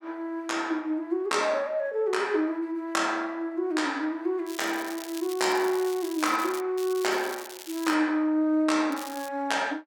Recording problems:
crackling; from 4.5 to 6.5 s, from 7 to 8 s and at 9 s; loose cable, SNR 14 dB

